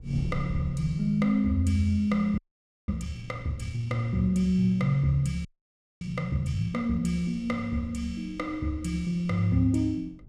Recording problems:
wind on the microphone; below 150 Hz, SNR 17 dB
audio freezing; at 2.5 s for 0.5 s and at 5.5 s for 0.5 s

